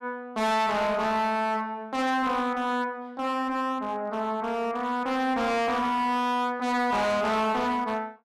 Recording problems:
distortion; hard clipping, signal-to-distortion ratio 6 dB

